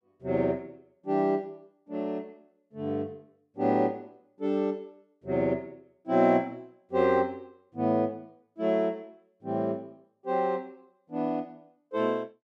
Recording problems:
none

